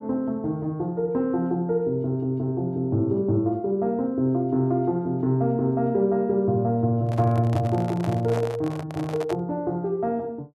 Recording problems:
handling noise; from 7 to 9.5 s; peak -4 dB vs average level

